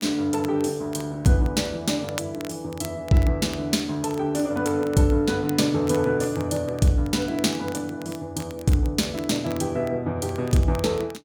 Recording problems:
crackle; vinyl, SNR 20 dB

